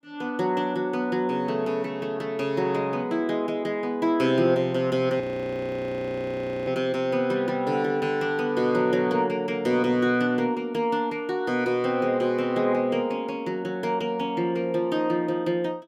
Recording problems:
audio freezing; at 5 s for 1.5 s

